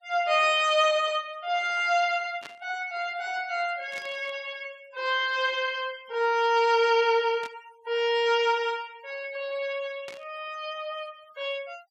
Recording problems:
noise reduction artefacts; signal-to-artefact ratio 24 dB
static burst; 4 times, first at 2.5 s; peak -12 dB vs average level

